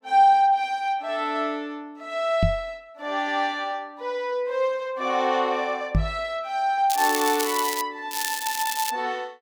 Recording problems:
microphone bump; at 2.5 s and at 6 s; peak +5 dB vs average level
crackling; at 7 s and at 8 s; loose cable, SNR 5 dB

